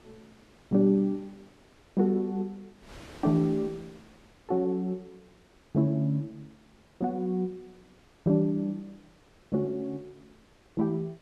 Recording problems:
wind noise; below 2 kHz, SNR 26 dB

